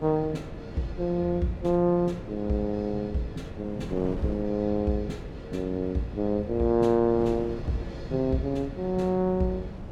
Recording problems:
wind noise; below 290 Hz, SNR 12 dB

